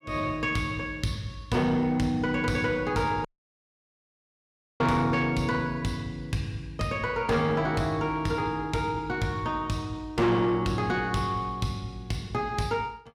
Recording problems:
distorted audio; soft clipping, signal-to-distortion ratio 10 dB
dropout; at 3.5 s for 1.5 s

